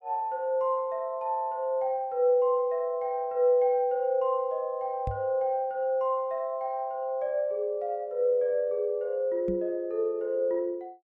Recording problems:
microphone thump; at 5 s and at 9.5 s; peak -3 dB vs average level

